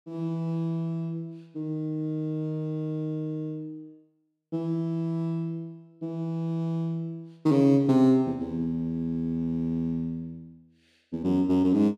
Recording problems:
none

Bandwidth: 13 kHz